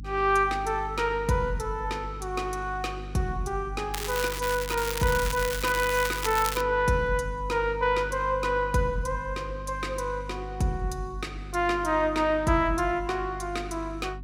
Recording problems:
hum; 50 Hz, harmonics up to 300 Hz, SNR 12 dB
crackle; from 4 to 6.5 s; loose cable, SNR 6 dB

